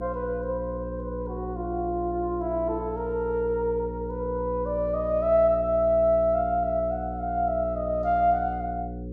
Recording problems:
mains hum; 60 Hz, harmonics up to 540 Hz, SNR 10 dB

